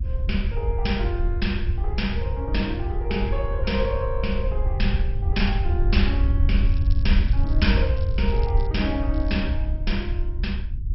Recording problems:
lossy codec; MP2, log-spectral distance 2 dB, nothing above 5.5 kHz
rumble; below 78 Hz, SNR -3 dB
crackle; from 6.5 to 8.5 s and at 9 s; loose cable, SNR 22 dB

